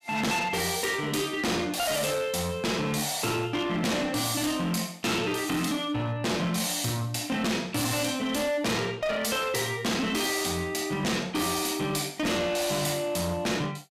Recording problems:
distortion; hard clipping, uneven, signal-to-distortion ratio 7 dB

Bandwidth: 15 kHz